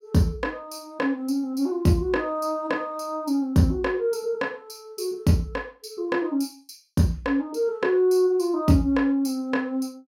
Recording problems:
none

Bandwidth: 16.5 kHz